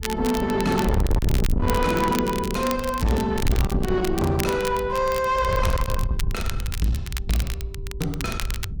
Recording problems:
distortion; soft clipping, signal-to-distortion ratio 7 dB
wind noise; below 120 Hz, SNR 5 dB
crackling; vinyl, SNR 12 dB

